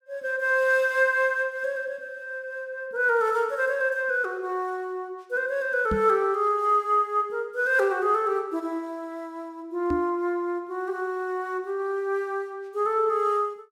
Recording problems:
knock on the microphone; at 6 s and at 10 s; peak 0 dB vs average level

